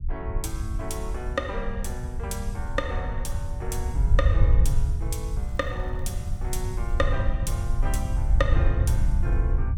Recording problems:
low-frequency rumble; below 78 Hz, SNR -5 dB
crackle; from 5 to 7 s; loose cable, SNR 30 dB

